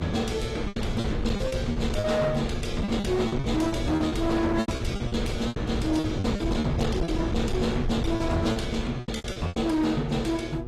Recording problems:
lossy compression; AAC, log-spectral distance 3 dB
distorted audio; hard clipping, uneven, signal-to-distortion ratio 10 dB
hum; 60 Hz, harmonics up to 1.2 kHz, SNR 12 dB
low-frequency rumble; below 160 Hz, SNR 5 dB
packet loss; 13% of the sound replaced, filled with repeated pitch periods

